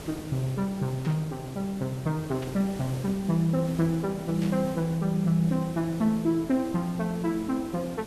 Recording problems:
hiss; slope -5 dB per octave, SNR 14 dB
static burst; at 1 s, at 2.5 s and at 4.5 s; peak -11 dB vs average level

